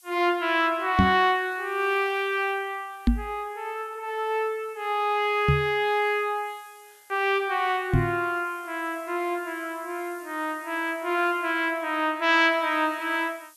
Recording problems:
background hiss; SNR 27 dB
microphone bump; 4 times, first at 1 s; peak +8 dB vs average level

